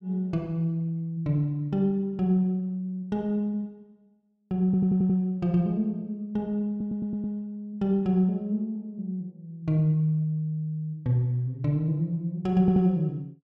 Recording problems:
stutter; at 4.5 s, at 6.5 s and at 13 s

